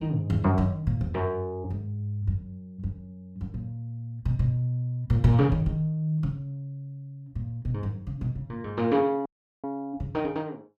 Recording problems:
dropout; at 9.5 s

